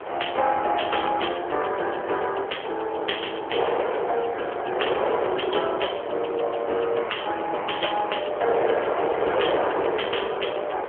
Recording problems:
telephone audio; 340 Hz to 3.4 kHz, AMR-NB
wind on the microphone; below 920 Hz, SNR 2 dB

